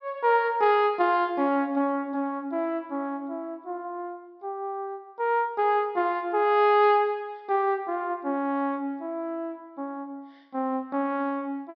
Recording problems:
treble cut off; nothing above 5.5 kHz

